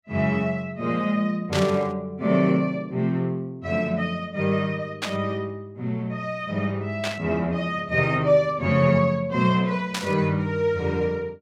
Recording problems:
static burst; 4 times, first at 1.5 s; peak +1 dB vs average level

